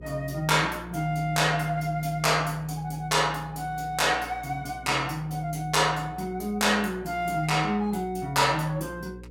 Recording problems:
hum; 60 Hz, harmonics up to 540 Hz, SNR 20 dB

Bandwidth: 17 kHz